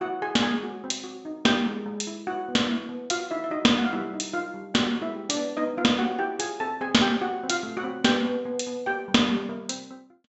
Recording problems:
treble cut off; nothing above 7.7 kHz

